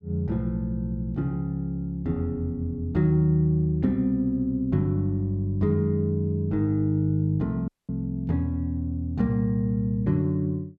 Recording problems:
audio cutting out; at 7.5 s

